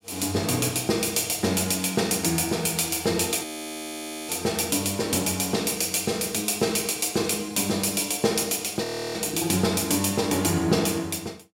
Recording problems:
audio freezing; at 3.5 s for 1 s and at 9 s

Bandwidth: 16 kHz